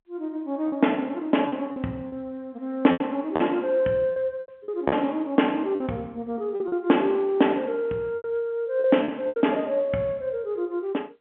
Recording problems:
phone line; 190 Hz to 3.4 kHz, G.711
packet loss; 8% of the sound replaced, filled with repeated pitch periods

